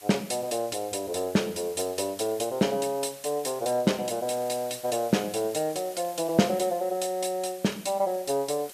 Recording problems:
hiss; slope +1 dB per octave, SNR 17 dB
crackle; from 3.5 to 6.5 s; loose cable, SNR 29 dB

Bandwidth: 14.5 kHz